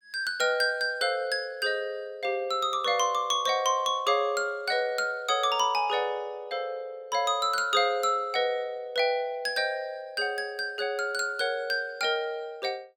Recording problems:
none

